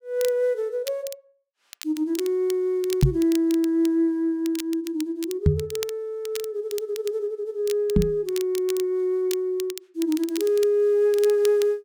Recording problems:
crackle; vinyl, SNR 15 dB
microphone bump; at 3 s, at 5.5 s and at 8 s; peak +10 dB vs average level

